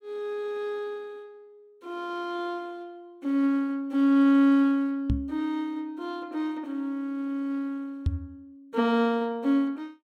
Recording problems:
microphone thump; at 5 s and at 8 s; peak +4 dB vs average level

